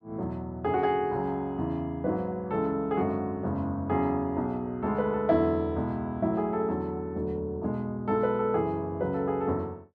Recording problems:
none

